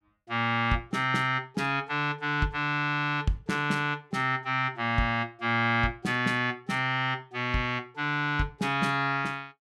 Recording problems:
none

